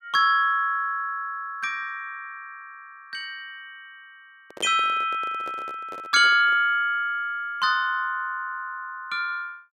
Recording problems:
handling noise; from 4.5 to 6.5 s; peak -9 dB vs average level

